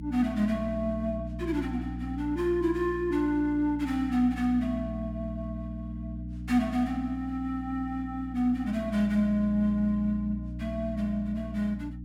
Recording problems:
hum; 60 Hz, harmonics up to 300 Hz, SNR 9 dB

